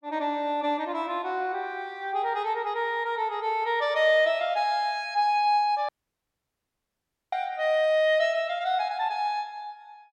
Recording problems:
dropout; at 6 s for 1.5 s

